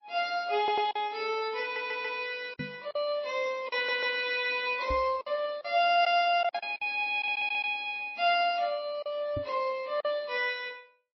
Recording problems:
codec artefacts; MP3, then MP3, log-spectral distance 2 dB, nothing above 4.9 kHz
packet loss; 5% of the sound replaced, filled with silence
audio stuttering; 4 times, first at 0.5 s
microphone bump; at 2.5 s, at 5 s and at 9.5 s; peak -4 dB vs average level

